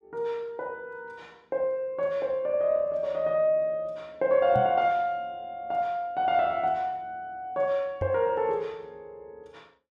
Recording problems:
knock on the microphone; at 4.5 s and at 8 s; peak -2 dB vs average level

